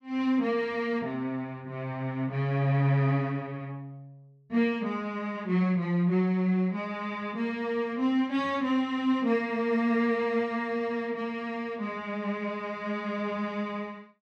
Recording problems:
none

